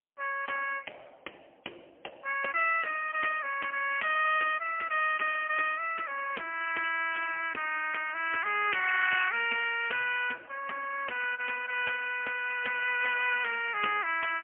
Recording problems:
telephone audio; 390 Hz to 3.1 kHz, AMR-NB, then MP3

